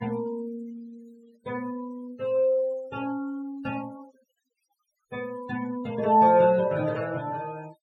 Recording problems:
denoising artefacts; signal-to-artefact ratio 24 dB

